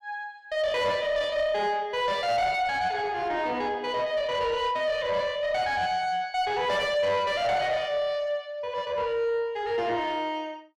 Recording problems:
distorted audio; soft clipping, signal-to-distortion ratio 9 dB

